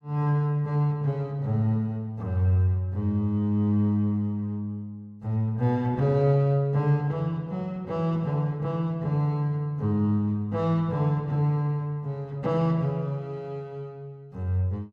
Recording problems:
none

